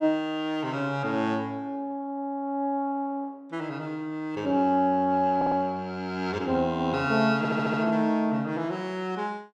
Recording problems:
audio stuttering; at 5.5 s and at 7.5 s

